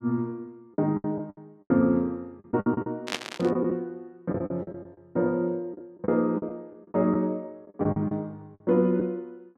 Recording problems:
packet loss; 11% of the sound replaced, filled with the last packet
burst of static; at 3 s; peak +3 dB vs average level

